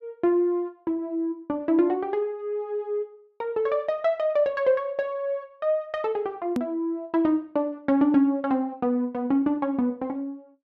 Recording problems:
click at an edit; at 6.5 s

